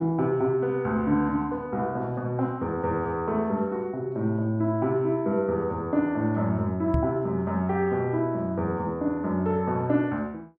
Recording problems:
microphone thump; at 7 s; peak +4 dB vs average level

